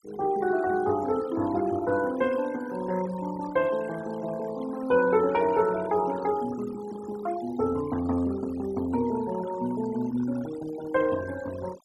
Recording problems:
noise reduction artefacts; signal-to-artefact ratio 16 dB

